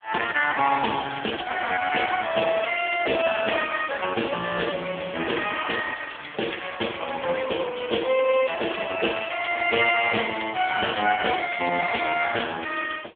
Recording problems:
telephone audio; 280 Hz to 3.4 kHz, AMR-NB

